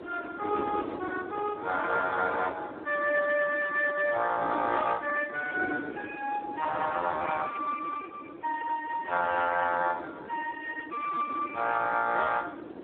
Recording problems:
phone line; 190 Hz to 3.5 kHz, Speex
wind noise; below 520 Hz, SNR 11 dB

